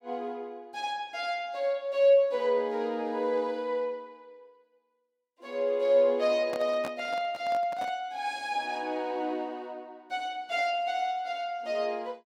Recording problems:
handling noise; from 6.5 to 8 s; peak -4 dB vs average level

